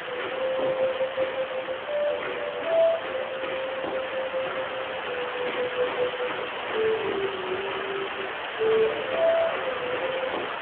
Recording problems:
phone line; 300 Hz to 3.3 kHz, Speex
hiss; SNR 4 dB

